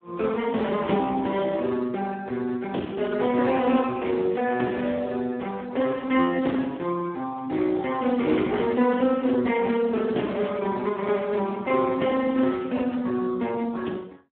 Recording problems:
telephone audio; 190 Hz to 3.6 kHz, Speex

